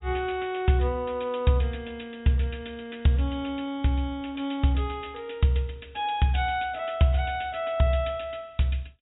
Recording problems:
treble missing; nothing above 4 kHz

